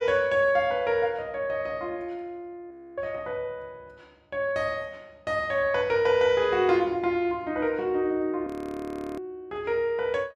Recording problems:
frozen audio; at 2.5 s and at 8.5 s for 0.5 s

